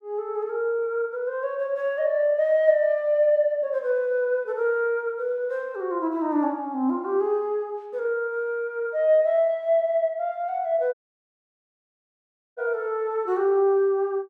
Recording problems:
audio cutting out; at 11 s for 1.5 s

